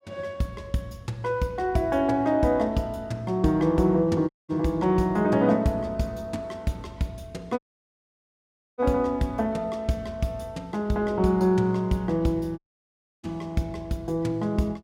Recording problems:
dropout; at 4.5 s, at 7.5 s for 1 s and at 13 s for 0.5 s

